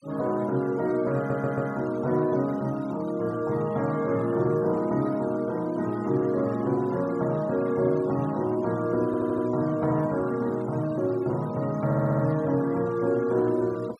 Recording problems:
noise reduction artefacts; signal-to-artefact ratio 23 dB
audio stuttering; at 1 s, at 9 s and at 12 s

